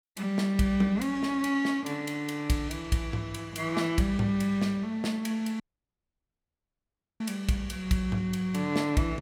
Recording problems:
dropout; at 5.5 s for 1.5 s

